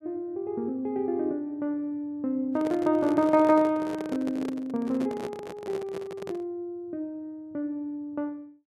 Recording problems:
handling noise; from 2.5 to 6.5 s; peak -5 dB vs average level

